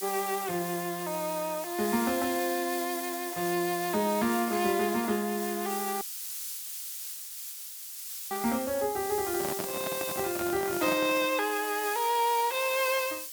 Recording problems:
background hiss; slope +7 dB per octave, SNR 6 dB
dropout; at 6 s for 2.5 s
handling noise; from 9.5 to 11 s; peak -3 dB vs average level

